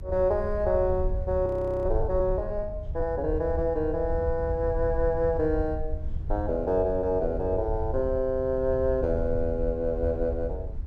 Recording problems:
low-frequency rumble; below 80 Hz, SNR 7 dB
frozen audio; at 1.5 s

